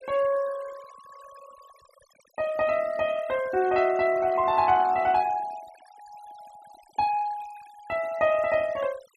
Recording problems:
denoising artefacts; signal-to-artefact ratio 20 dB

